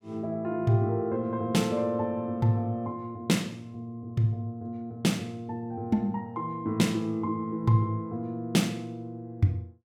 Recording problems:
none

